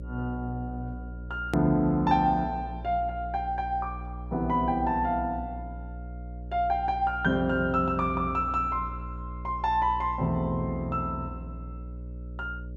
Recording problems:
hum; 60 Hz, harmonics up to 600 Hz, SNR 11 dB
hard cut with a click; at 1.5 s

